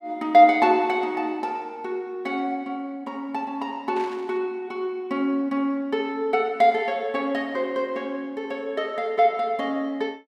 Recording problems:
static burst; at 4 s; peak -13 dB vs average level

